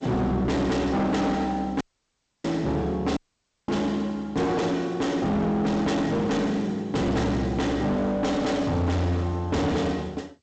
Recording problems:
lossy compression; G.722, log-spectral distance 2 dB, nothing above 7.8 kHz
distortion; hard clipping, signal-to-distortion ratio 8 dB
dropout; at 2 s for 0.5 s and at 3 s for 0.5 s

